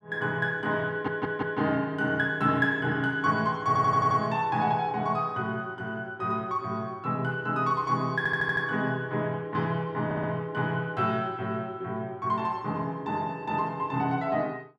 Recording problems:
stutter; 4 times, first at 1 s

